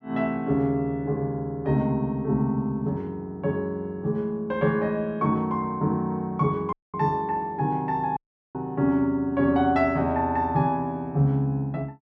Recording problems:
audio cutting out; at 6.5 s and at 8 s

